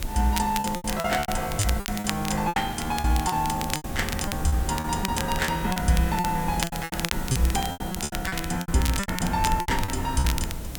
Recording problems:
hum; 60 Hz, harmonics up to 300 Hz, SNR 18 dB
hiss; slope -5 dB per octave, SNR 12 dB
low-frequency rumble; below 76 Hz, SNR 12 dB
crackle; vinyl, SNR 8 dB
packet loss; 17% of the sound replaced, filled with repeated pitch periods

